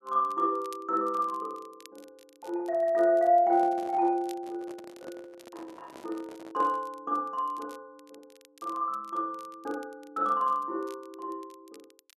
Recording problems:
crackle; vinyl, SNR 29 dB
handling noise; from 3.5 to 7 s; peak -12 dB vs average level

